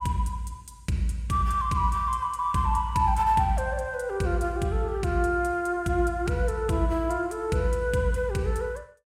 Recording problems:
none

